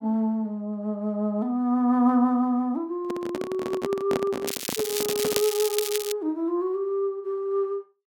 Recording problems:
microphone handling noise; from 3 to 5.5 s; peak +1 dB vs average level
crackle; from 4.5 to 6 s; loose cable, SNR 4 dB

